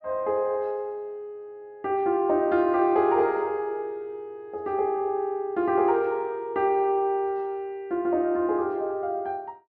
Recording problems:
treble cut off; nothing above 6.5 kHz

